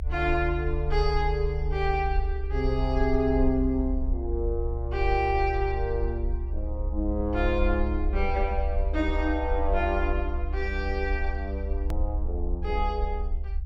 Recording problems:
rumble; below 66 Hz, SNR 2 dB
hard cut with a click; at 12 s

